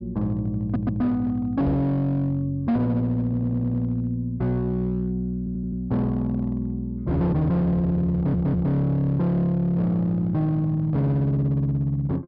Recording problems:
low-pass filter; nothing above 5.5 kHz
distorted audio; hard clipping, uneven, signal-to-distortion ratio 12 dB
audio stuttering; 4 times, first at 0.5 s
microphone thump; at 1.5 s; peak +1 dB vs average level

